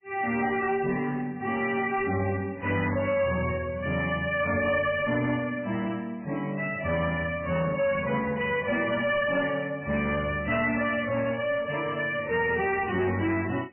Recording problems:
codec artefacts; MP3, log-spectral distance 5 dB, nothing above 2.9 kHz
distortion; soft clipping, signal-to-distortion ratio 11 dB

